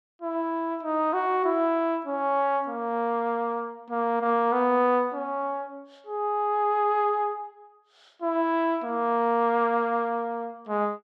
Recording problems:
none

